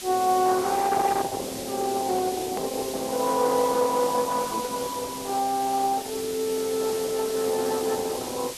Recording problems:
lossy codec; Opus, then Opus, log-spectral distance 3 dB, nothing above 13.1 kHz
background hiss; SNR 10 dB
click at an edit; at 2.5 s

